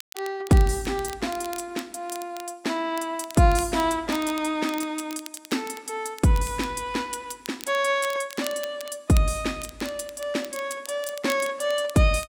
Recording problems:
crackling; vinyl, SNR 16 dB

